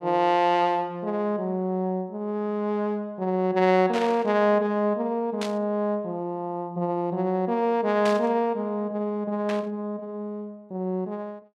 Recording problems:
burst of static; 4 times, first at 4 s; peak -4 dB vs average level

